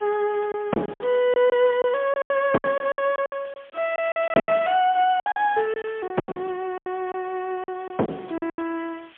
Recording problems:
telephone audio; 240 Hz to 3.4 kHz, AMR-NB, then MP3
background hiss; SNR 27 dB
packet loss; 14% of the sound replaced, filled with silence

